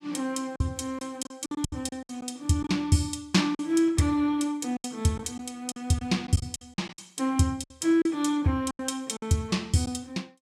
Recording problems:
packet loss; 10% of the sound replaced, filled with silence

